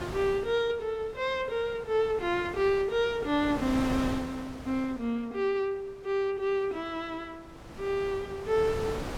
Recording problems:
wind on the microphone; below 950 Hz, SNR 11 dB

